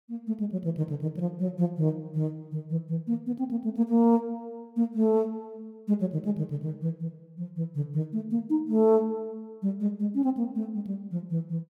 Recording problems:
none

